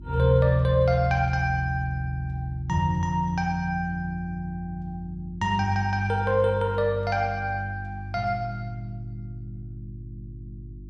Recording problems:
hum; 50 Hz, harmonics up to 350 Hz, SNR 17 dB

